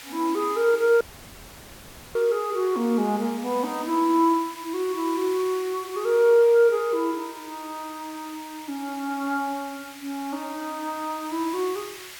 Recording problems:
background hiss; SNR 17 dB
dropout; at 1 s for 1 s

